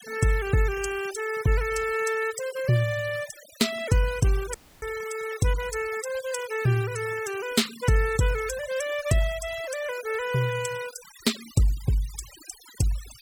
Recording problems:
denoising artefacts; signal-to-artefact ratio 15 dB
audio cutting out; at 4.5 s

